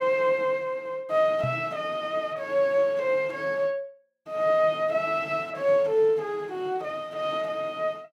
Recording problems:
microphone bump; at 1.5 s; peak -2 dB vs average level

